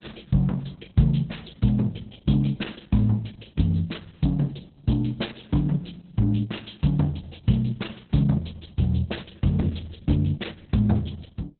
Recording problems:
lossy codec; Opus, log-spectral distance 7 dB, nothing above 4 kHz

